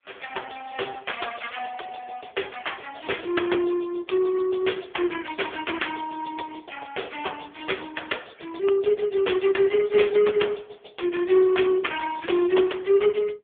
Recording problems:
telephone audio; 320 Hz to 3.5 kHz, AMR-NB

